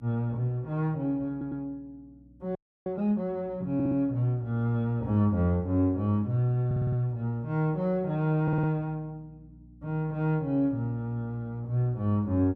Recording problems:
hum; 60 Hz, harmonics up to 300 Hz, SNR 26 dB
stutter; 4 times, first at 1.5 s
audio freezing; at 2.5 s

